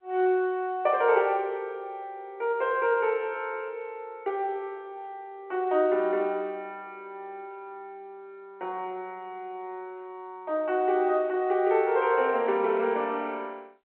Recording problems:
phone line; 280 Hz to 3.2 kHz, G.711

